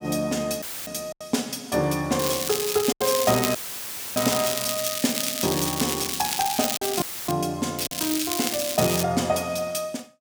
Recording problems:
lost packets; 3% of the sound replaced, filled with silence
audio cutting out; at 0.5 s, at 3.5 s for 0.5 s and at 7 s; filled with static
crackle; from 2 to 7.5 s and from 8 to 9 s; loose cable, SNR 1 dB

